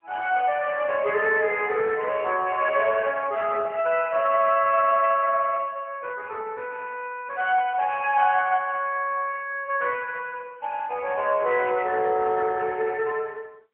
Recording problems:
telephone audio; 300 Hz to 3.3 kHz, AMR-NB

